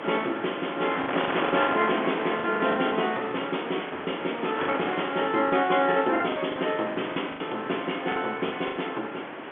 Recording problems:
phone line; 240 Hz to 3.5 kHz, G.711
wind on the microphone; below 1.8 kHz, SNR 6 dB
lost packets; 10% of the sound replaced, filled with the last packet

